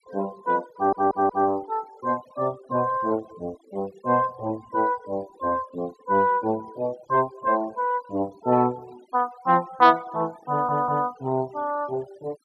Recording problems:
noise reduction artefacts; signal-to-artefact ratio 23 dB
audio stuttering; at 0.5 s and at 11 s

